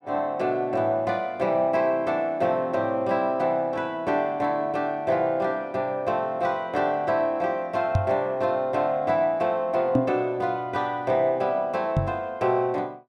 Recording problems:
microphone thump; at 8 s, at 10 s and at 12 s; peak +6 dB vs average level

